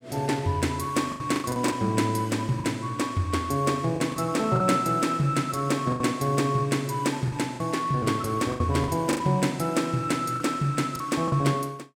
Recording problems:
lost packets; 7% of the sound replaced, filled with the last packet

